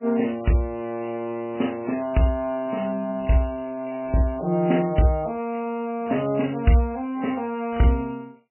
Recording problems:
codec artefacts; MP3, log-spectral distance 4 dB, nothing above 3 kHz

